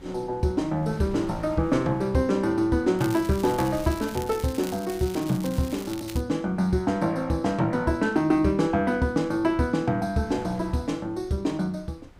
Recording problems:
wind noise; below 360 Hz, SNR 21 dB
crackling; from 3 to 6 s; loose cable, SNR 16 dB

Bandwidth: 15.5 kHz